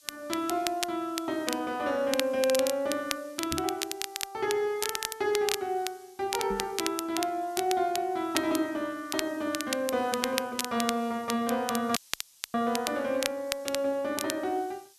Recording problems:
hiss; SNR 24 dB
crackling; vinyl, SNR 5 dB
knock on the microphone; at 3.5 s and at 6.5 s; peak -2 dB vs average level
audio cutting out; at 12 s for 0.5 s

